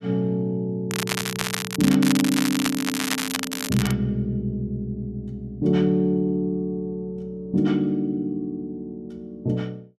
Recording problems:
crackle; from 1 to 4 s; loose cable, SNR 3 dB

